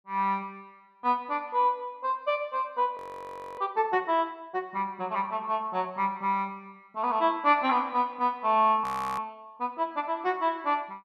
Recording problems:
audio freezing; at 3 s for 0.5 s and at 9 s

